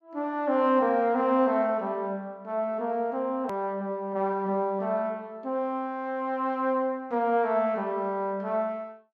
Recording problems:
click at an edit; at 3.5 s

